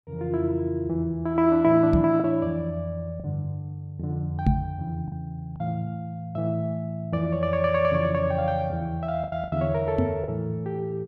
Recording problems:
packet loss; 3% of the sound replaced, filled with the last packet
microphone bump; at 2 s, at 4.5 s and at 10 s; peak +8 dB vs average level

